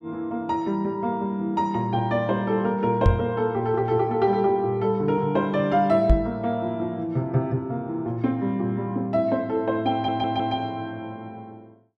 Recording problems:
microphone thump; at 3 s and at 6 s; peak +8 dB vs average level
audio stuttering; at 10 s

